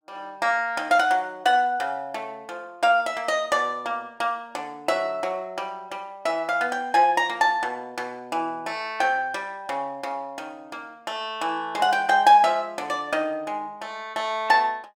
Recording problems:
none

